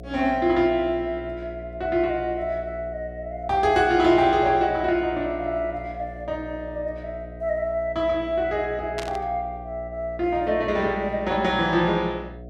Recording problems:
electrical hum; 60 Hz, harmonics up to 720 Hz, SNR 16 dB
static burst; at 9 s; peak -5 dB vs average level

